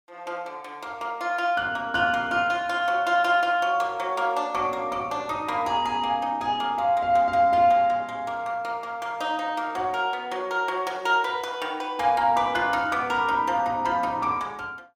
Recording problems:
none

